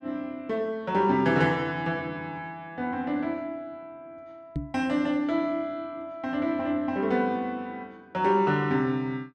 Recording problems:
knock on the microphone; at 4.5 s; peak 0 dB vs average level

